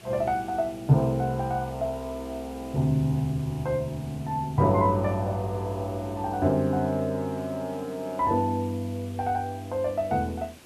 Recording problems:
hiss; SNR 22 dB

